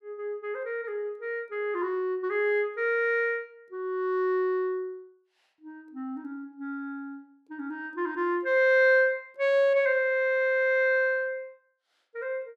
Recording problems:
none

